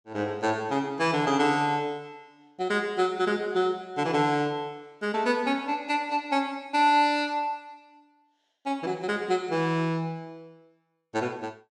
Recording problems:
none

